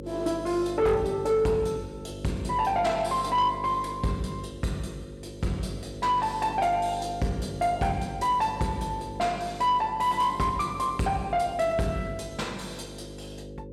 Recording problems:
distorted audio; soft clipping, signal-to-distortion ratio 12 dB
hum; 50 Hz, harmonics up to 550 Hz, SNR 13 dB

